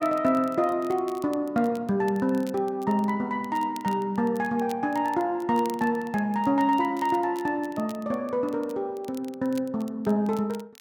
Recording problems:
crackling; vinyl, SNR 24 dB

